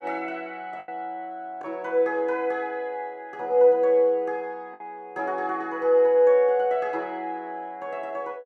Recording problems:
lost packets; 1.9% of the sound replaced, filled with the last packet

